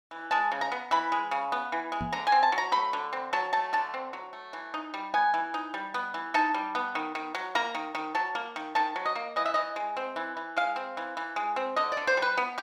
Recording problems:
microphone bump; at 2 s; peak -3 dB vs average level

